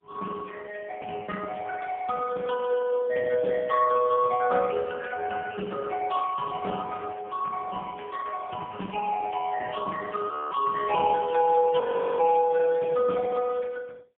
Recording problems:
phone line; 220 Hz to 2.2 kHz, AMR-NB, then MP3
audio freezing; at 10 s and at 12 s

